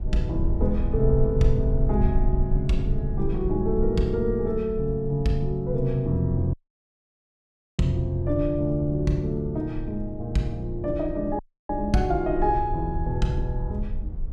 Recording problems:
rumble; below 60 Hz, strongest tone 20 Hz, SNR 6 dB
audio cutting out; at 6.5 s for 1.5 s and at 11 s

